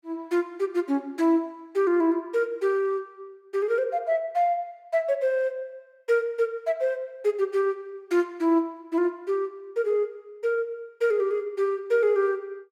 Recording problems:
none

